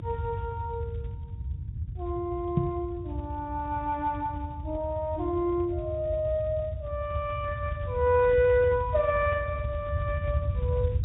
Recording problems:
low-pass filter; nothing above 4 kHz
lossy codec; Speex, log-spectral distance 2 dB
rumble; below 110 Hz, SNR 5 dB
microphone bump; at 2.5 s; peak +7 dB vs average level

